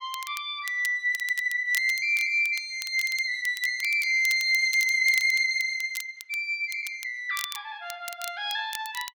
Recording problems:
crackle; vinyl, SNR 15 dB

